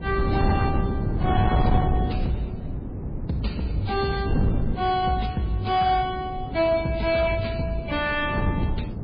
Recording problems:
lossy codec; MP3, then MP3, log-spectral distance 2 dB, nothing above 4.4 kHz
distortion; soft clipping, signal-to-distortion ratio 11 dB
wind on the microphone; below 220 Hz, SNR 3 dB

